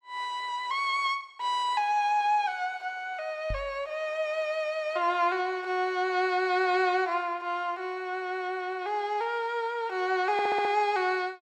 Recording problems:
knock on the microphone; at 3.5 s; peak -4 dB vs average level
audio stuttering; at 10 s

